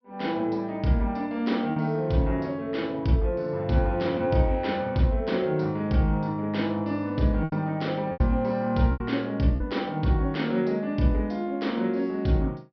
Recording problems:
low-pass filter; nothing above 5.5 kHz
packet loss; 3% of the sound replaced, filled with repeated pitch periods

